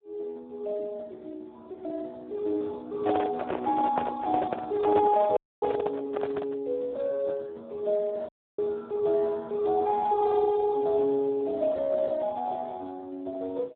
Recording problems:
phone line; 280 Hz to 2.3 kHz, Speex
microphone handling noise; from 3 to 6.5 s; peak +3 dB vs average level
audio cutting out; at 5.5 s and at 8.5 s

